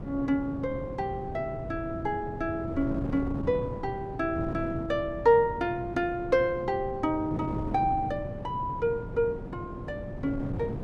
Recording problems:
wind on the microphone; below 320 Hz, SNR 8 dB

